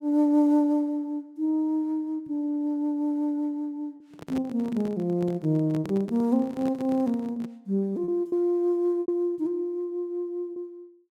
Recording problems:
lost packets; 3% of the sound replaced, filled with repeated pitch periods
microphone handling noise; from 4 to 7.5 s; peak -5 dB vs average level

